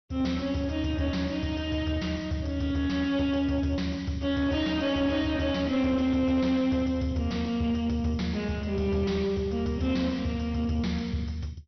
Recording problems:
treble missing; nothing above 5.8 kHz
distortion; soft clipping, signal-to-distortion ratio 10 dB

